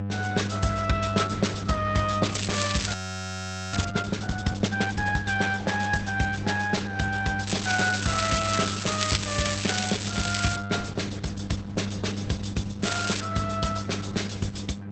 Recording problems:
codec artefacts; Opus, log-spectral distance 8 dB, nothing above 8 kHz
mains hum; 50 Hz, harmonics up to 800 Hz, SNR 6 dB
crackle; from 2.5 to 4 s, from 7.5 to 11 s and at 13 s; loose cable, SNR 3 dB
audio freezing; at 3 s for 1 s

